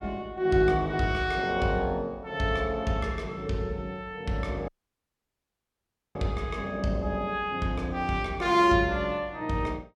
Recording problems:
dropout; at 4.5 s for 1.5 s

